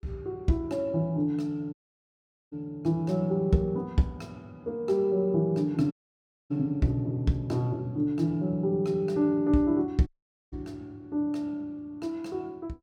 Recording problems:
dropout; at 1.5 s for 1 s, at 6 s for 0.5 s and at 10 s

